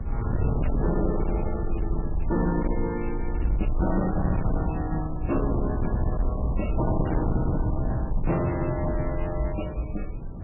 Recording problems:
lossy codec; MP3, log-spectral distance 4 dB, nothing above 2.9 kHz
distortion; hard clipping, signal-to-distortion ratio 11 dB
low-frequency rumble; below 56 Hz, SNR 4 dB
wind noise; below 190 Hz, SNR 3 dB

